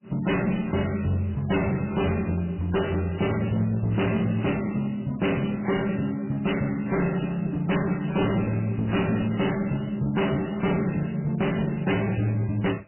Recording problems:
lossy compression; MP3, log-spectral distance 6 dB, nothing above 3 kHz
distortion; hard clipping, uneven, signal-to-distortion ratio 6 dB

